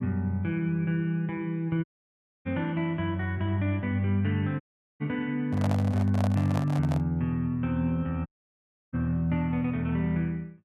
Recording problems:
audio cutting out; at 2 s for 0.5 s, at 4.5 s and at 8.5 s for 0.5 s
microphone handling noise; from 5.5 to 7 s; peak -1 dB vs average level

